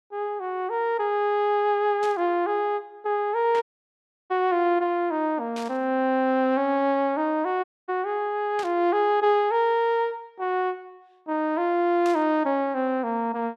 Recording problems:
burst of static; 5 times, first at 2 s; peak -10 dB vs average level
dropout; at 3.5 s for 0.5 s and at 7.5 s

